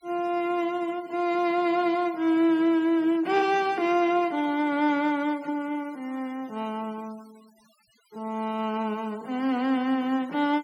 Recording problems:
denoising artefacts; signal-to-artefact ratio 26 dB

